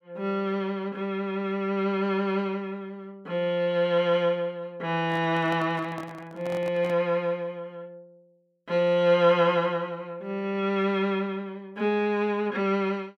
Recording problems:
microphone handling noise; from 5 to 7 s; peak -9 dB vs average level

